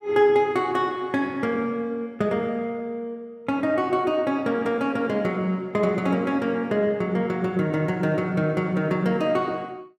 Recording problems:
none

